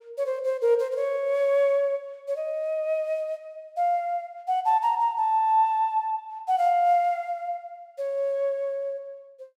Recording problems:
none

